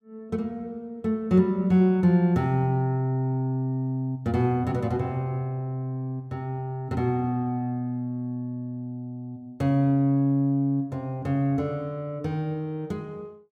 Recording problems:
none

